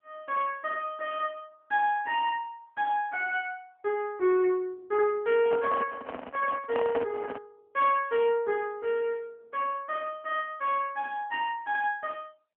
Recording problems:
telephone audio; 220 Hz to 3.2 kHz, AMR-NB
handling noise; from 5.5 to 7.5 s; peak -1 dB vs average level

